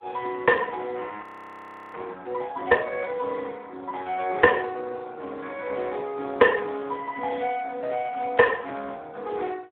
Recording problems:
telephone audio; 240 Hz to 2.7 kHz, Speex
audio freezing; at 1 s for 0.5 s

